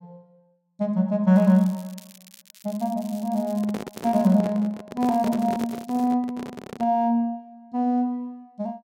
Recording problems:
crackling; from 1.5 to 4.5 s and from 5 to 6 s; loose cable, SNR 24 dB
handling noise; from 3.5 to 7 s; peak -4 dB vs average level

